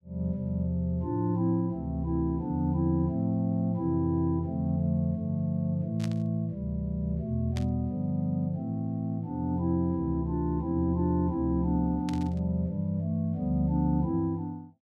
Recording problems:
burst of static; at 6 s, at 7.5 s and at 12 s; peak -8 dB vs average level

